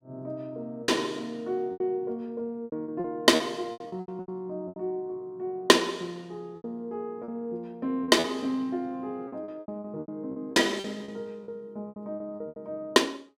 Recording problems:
lost packets; 12% of the sound replaced, filled with repeated pitch periods

